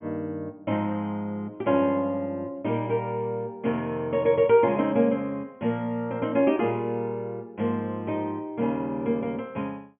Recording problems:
low-pass filter; nothing above 3.3 kHz

